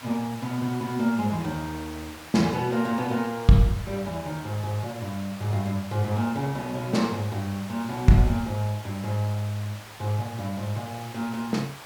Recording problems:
hiss; SNR 15 dB

